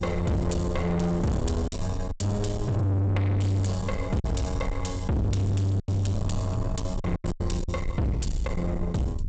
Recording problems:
lossy codec; G.722, log-spectral distance 2 dB, nothing above 7.8 kHz
distortion; soft clipping, signal-to-distortion ratio 7 dB
low-frequency rumble; below 110 Hz, SNR 7 dB
lost packets; 5% of the sound replaced, filled with silence

